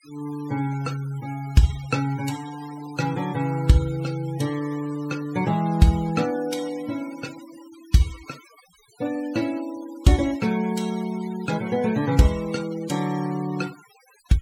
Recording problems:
noise reduction artefacts; signal-to-artefact ratio 19 dB

